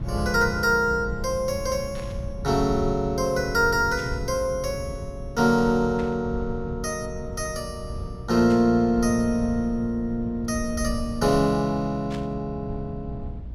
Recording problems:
hum; 60 Hz, harmonics up to 300 Hz, SNR 18 dB
low-frequency rumble; below 110 Hz, SNR 13 dB
burst of static; 5 times, first at 2 s; peak -12 dB vs average level

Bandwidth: 16 kHz